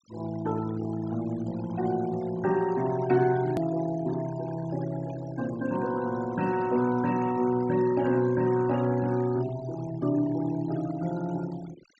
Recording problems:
low-pass filter; nothing above 8 kHz
noise reduction artefacts; signal-to-artefact ratio 17 dB
hard cut with a click; at 3.5 s

